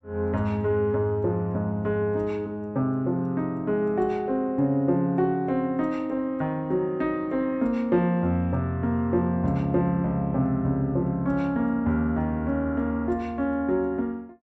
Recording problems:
none

